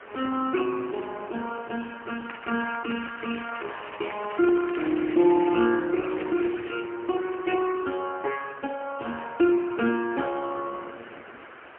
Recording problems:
phone line; 240 Hz to 3 kHz, AMR-NB, then MP3
hiss; SNR 18 dB
crackling; from 2.5 to 5.5 s and at 6 s; loose cable, SNR 15 dB

